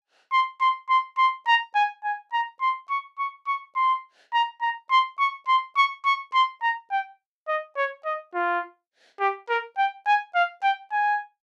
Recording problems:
none

